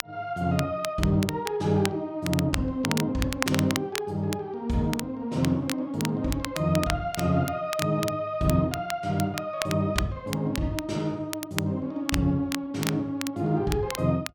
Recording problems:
crackling; vinyl, SNR 8 dB

